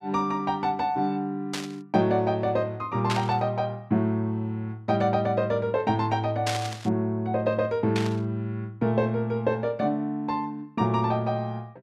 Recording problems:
static burst; 4 times, first at 1.5 s; peak +1 dB vs average level

